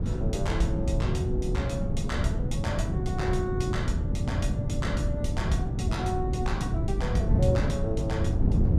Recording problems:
wind on the microphone; below 170 Hz, SNR -4 dB

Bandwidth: 15 kHz